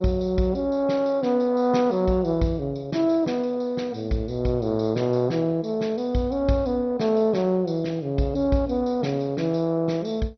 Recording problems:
lossy codec; MP2, log-spectral distance 2 dB, nothing above 6 kHz

